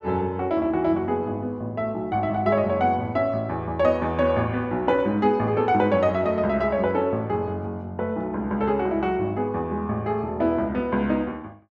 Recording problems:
none

